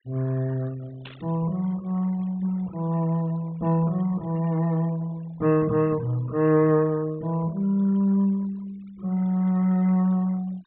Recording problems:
treble missing; nothing above 4 kHz
denoising artefacts; signal-to-artefact ratio 25 dB
static burst; at 1 s; peak -12 dB vs average level

